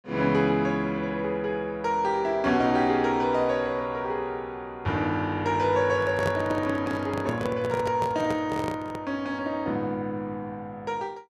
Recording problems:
microphone handling noise; from 6 to 9 s; peak 0 dB vs average level

